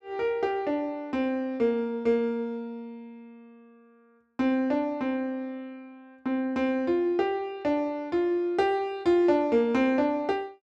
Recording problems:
none

